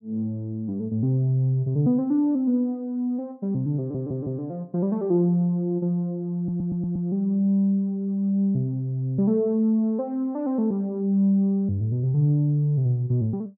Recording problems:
audio stuttering; at 4 s and at 6.5 s

